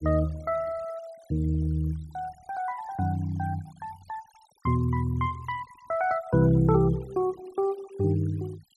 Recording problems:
noise reduction artefacts; signal-to-artefact ratio 24 dB

